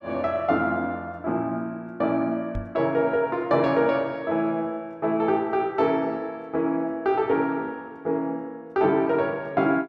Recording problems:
microphone thump; at 2.5 s; peak -4 dB vs average level

